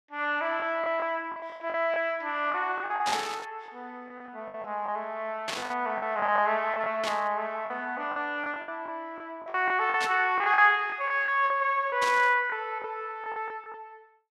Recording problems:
packet loss; 11% of the sound replaced, filled with the last packet
static burst; 5 times, first at 3 s; peak 0 dB vs average level

